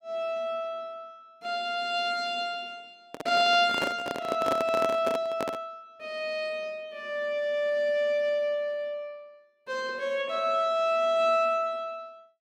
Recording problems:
handling noise; from 3 to 5.5 s; peak +1 dB vs average level

